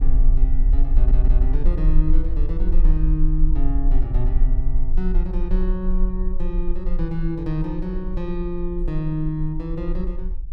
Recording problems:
rumble; below 38 Hz, strongest tone 18 Hz, SNR -4 dB
audio stuttering; at 1 s

